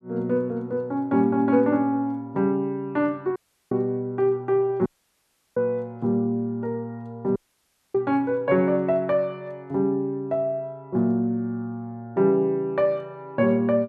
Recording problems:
dropout; at 3.5 s, at 5 s for 0.5 s and at 7.5 s for 0.5 s

